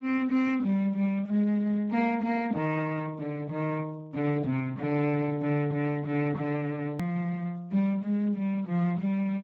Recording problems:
lossy codec; Speex, log-spectral distance 2 dB, nothing above 18.3 kHz
click at an edit; at 7 s

